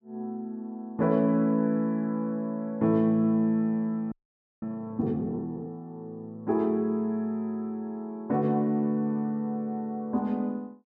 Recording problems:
frozen audio; at 4 s for 0.5 s

